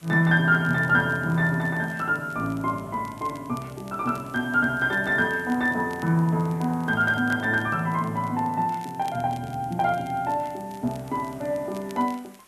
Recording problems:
background hiss; slope -2 dB per octave, SNR 27 dB
crackling; vinyl, SNR 27 dB

